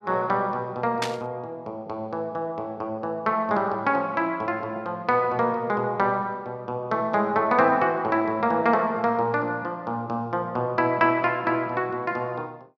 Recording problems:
burst of static; at 1 s; peak +1 dB vs average level

